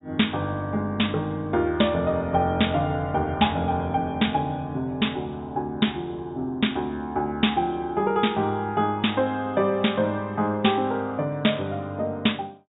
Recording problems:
treble cut off; nothing above 4 kHz

